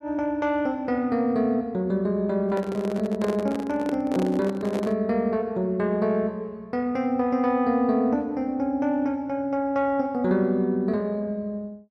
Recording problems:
handling noise; from 2.5 to 5 s; peak -2 dB vs average level

